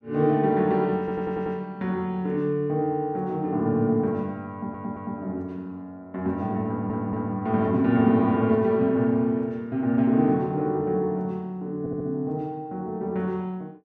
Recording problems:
audio stuttering; 4 times, first at 1 s

